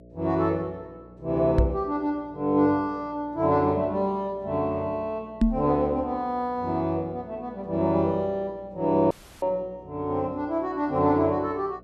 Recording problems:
electrical hum; 60 Hz, harmonics up to 660 Hz, SNR 24 dB
microphone thump; at 1.5 s and at 5.5 s; peak +8 dB vs average level
dropout; at 9 s

